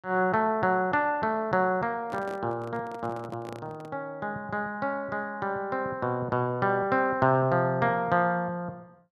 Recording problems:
microphone handling noise; from 2 to 4 s; peak -10 dB vs average level

